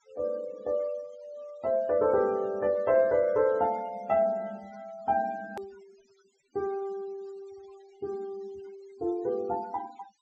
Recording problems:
treble cut off; nothing above 8 kHz
noise reduction artefacts; signal-to-artefact ratio 25 dB
hard cut with a click; at 5.5 s

